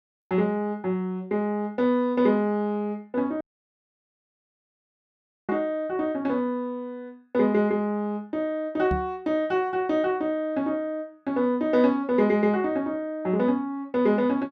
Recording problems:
audio cutting out; at 3.5 s for 2 s
microphone bump; at 9 s; peak -1 dB vs average level

